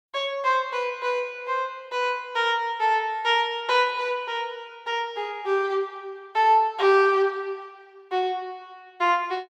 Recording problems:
none

